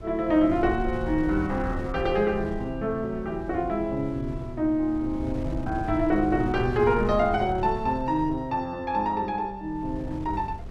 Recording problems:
wind on the microphone; below 120 Hz, SNR 11 dB

